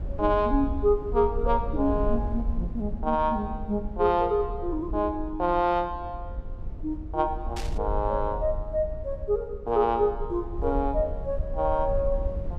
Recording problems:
low-frequency rumble; below 66 Hz, SNR 8 dB
static burst; at 7.5 s; peak -8 dB vs average level

